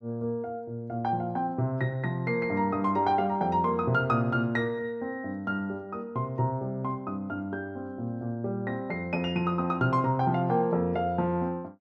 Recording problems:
none

